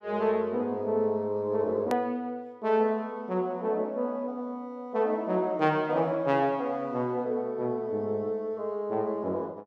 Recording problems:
edit click; at 2 s

